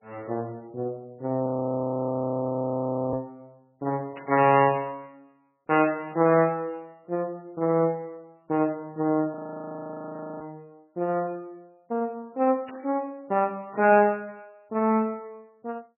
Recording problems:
lossy compression; MP3, log-spectral distance 2 dB, nothing above 2.8 kHz
frozen audio; at 1.5 s for 1.5 s and at 9.5 s for 1 s
burst of static; at 4 s and at 13 s; peak -13 dB vs average level

